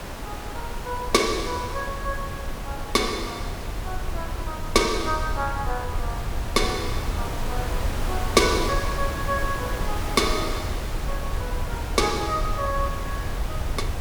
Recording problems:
background hiss; slope -5 dB per octave, SNR 8 dB
low-frequency rumble; below 76 Hz, SNR 7 dB

